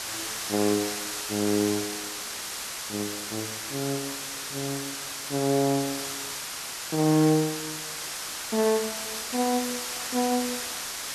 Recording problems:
hiss; slope +1 dB per octave, SNR 4 dB

